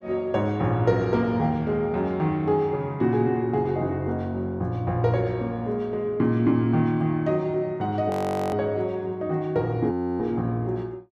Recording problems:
frozen audio; at 8 s and at 10 s

